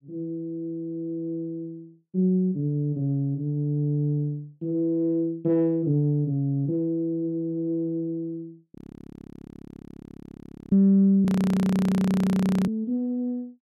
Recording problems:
frozen audio; at 9 s for 2 s and at 11 s for 1.5 s

